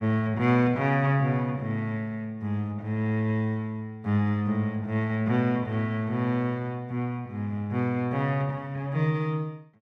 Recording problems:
none

